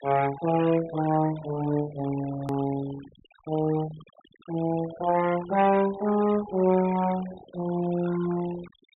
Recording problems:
treble missing; nothing above 4 kHz
denoising artefacts; signal-to-artefact ratio 17 dB
edit click; at 2.5 s

